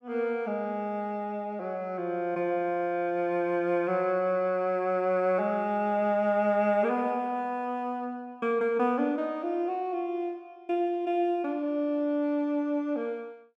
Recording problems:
none

